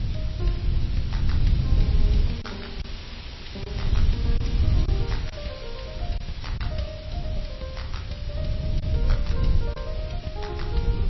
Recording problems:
lossy compression; MP3, log-spectral distance 4 dB, nothing above 5.7 kHz
hiss; slope -1 dB per octave, SNR 5 dB
wind noise; below 86 Hz, SNR -10 dB
packet loss; 1.8% of the sound replaced, filled with silence

